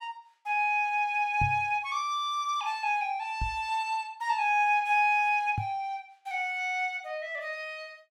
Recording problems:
microphone bump; at 1.5 s, at 3.5 s and at 5.5 s; peak 0 dB vs average level

